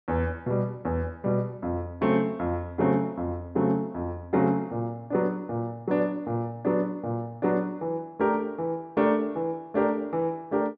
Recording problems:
none

